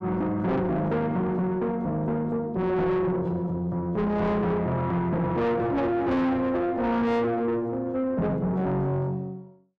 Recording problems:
distortion; soft clipping, signal-to-distortion ratio 5 dB

